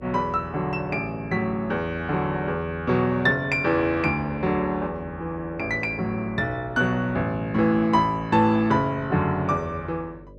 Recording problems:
electrical hum; 50 Hz, harmonics up to 600 Hz, SNR 24 dB

